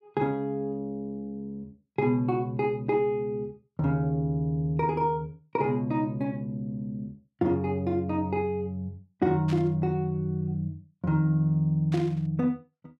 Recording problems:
static burst; at 9.5 s and at 12 s; peak -9 dB vs average level

